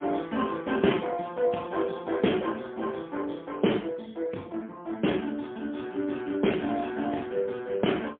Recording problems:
telephone audio; 170 Hz to 3.4 kHz, AMR-NB, then MP3

